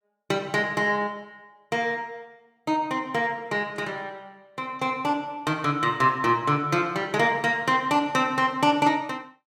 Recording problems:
none

